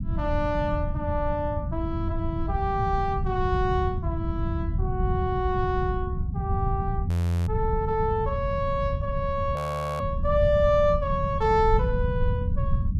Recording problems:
rumble; below 120 Hz, SNR 2 dB
frozen audio; at 7 s and at 9.5 s

